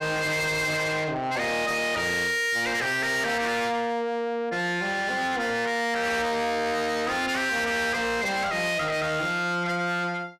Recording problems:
distorted audio; soft clipping, signal-to-distortion ratio 7 dB

